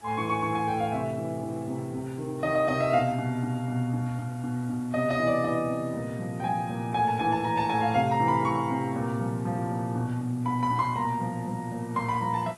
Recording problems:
codec artefacts; AAC, log-spectral distance 4 dB
hiss; slope -4 dB per octave, SNR 25 dB

